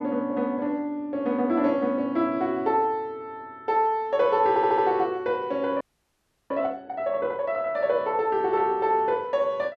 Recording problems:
audio stuttering; at 4.5 s
audio freezing; at 6 s for 0.5 s

